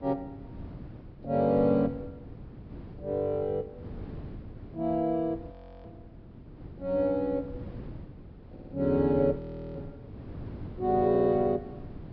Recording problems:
low-pass filter; nothing above 5.5 kHz
wind noise; below 280 Hz, SNR 16 dB
audio freezing; at 5.5 s and at 9.5 s
stutter; at 8.5 s and at 11 s

